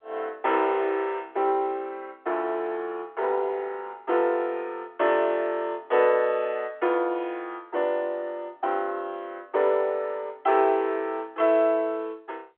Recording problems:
phone line; 320 Hz to 3.6 kHz, G.711

